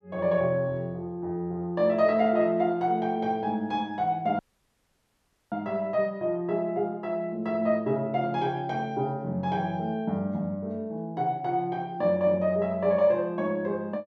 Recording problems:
audio cutting out; at 4.5 s for 1 s

